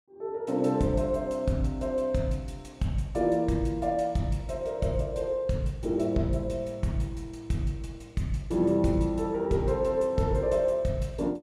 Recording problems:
none

